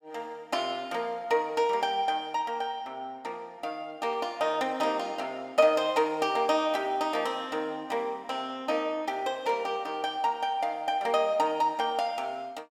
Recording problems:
none

